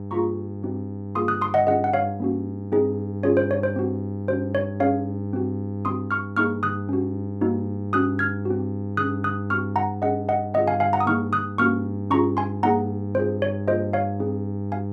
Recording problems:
hum; 50 Hz, harmonics up to 900 Hz, SNR 6 dB

